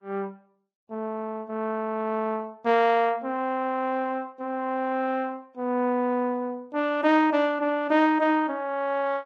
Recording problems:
codec artefacts; Vorbis, log-spectral distance 2 dB

